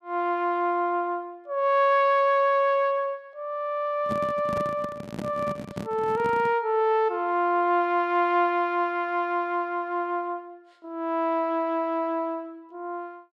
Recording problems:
microphone handling noise; from 4 to 6.5 s; peak -3 dB vs average level

